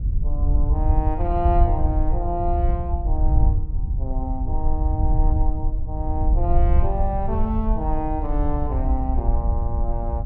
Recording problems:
wind on the microphone; below 68 Hz, SNR -5 dB

